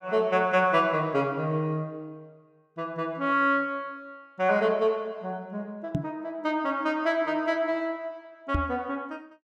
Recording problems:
microphone thump; at 6 s and at 8.5 s; peak +4 dB vs average level

